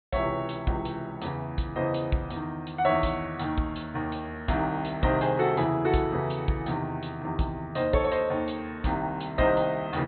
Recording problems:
low-pass filter; nothing above 4.2 kHz

